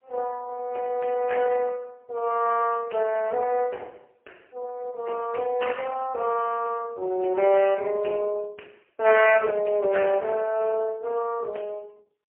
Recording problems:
phone line; 320 Hz to 2.8 kHz, AMR-NB, then MP3

